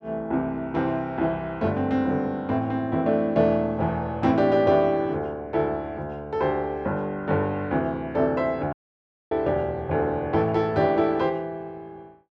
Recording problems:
audio cutting out; at 8.5 s for 0.5 s

